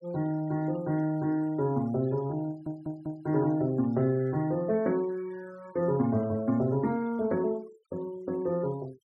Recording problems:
noise reduction artefacts; signal-to-artefact ratio 25 dB
audio stuttering; at 2.5 s

